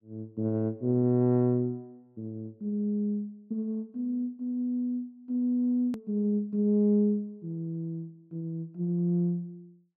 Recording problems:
click at an edit; at 6 s

